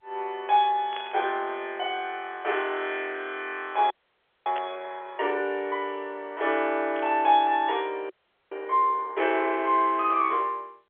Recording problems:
phone line; 340 Hz to 3.6 kHz, G.711
burst of static; at 1 s, at 4.5 s and at 7 s; peak -7 dB vs average level
frozen audio; at 4 s for 0.5 s and at 8 s

